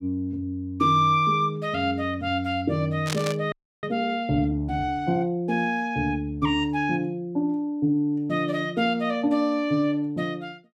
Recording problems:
static burst; at 3 s; peak -1 dB vs average level
audio freezing; at 3.5 s

